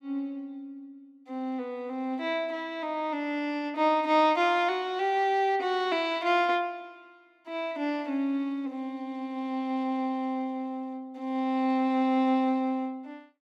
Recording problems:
none

